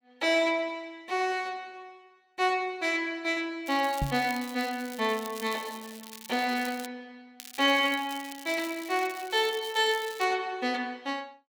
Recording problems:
crackling; from 3.5 to 7 s and from 7.5 to 10 s; loose cable, SNR 16 dB
knock on the microphone; at 4 s; peak +1 dB vs average level

